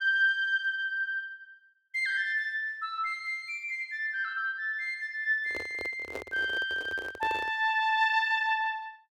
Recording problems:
microphone handling noise; from 5.5 to 7.5 s; peak -5 dB vs average level

